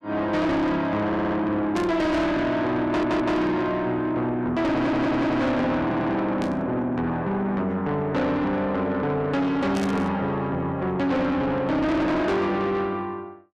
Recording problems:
distorted audio; soft clipping, signal-to-distortion ratio 7 dB
stutter; 4 times, first at 1 s
static burst; at 2 s, at 6.5 s and at 10 s; peak -8 dB vs average level

